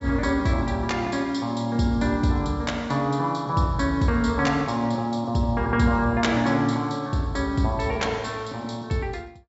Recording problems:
treble missing; nothing above 7.5 kHz

